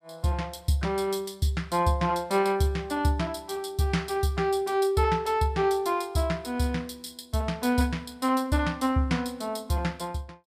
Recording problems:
none

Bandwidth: 15.5 kHz